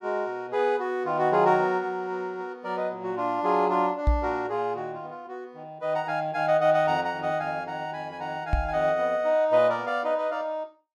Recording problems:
microphone bump; at 4 s and at 8.5 s; peak +6 dB vs average level

